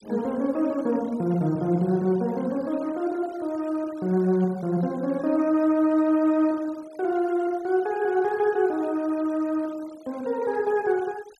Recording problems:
noise reduction artefacts; signal-to-artefact ratio 26 dB

